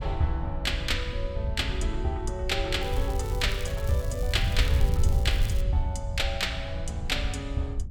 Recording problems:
wind on the microphone; below 84 Hz, SNR 0 dB
crackling; from 3 to 5.5 s; loose cable, SNR 15 dB

